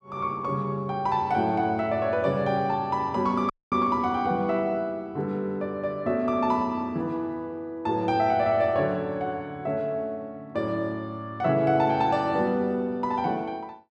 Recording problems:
dropout; at 3.5 s

